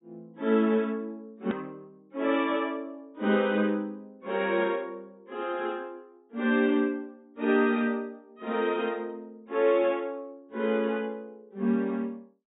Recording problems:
treble missing; nothing above 4 kHz
click at an edit; at 1.5 s

